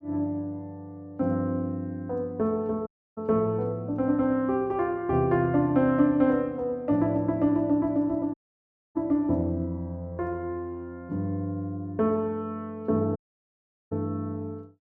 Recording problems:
audio cutting out; at 3 s, at 8.5 s for 0.5 s and at 13 s for 1 s

